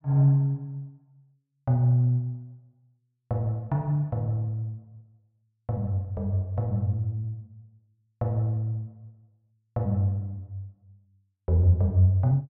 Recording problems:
none

